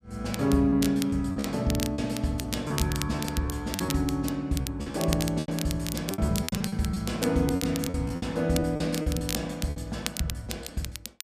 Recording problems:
crackling; vinyl, SNR 9 dB
packet loss; 11% of the sound replaced, filled with repeated pitch periods

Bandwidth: 14.5 kHz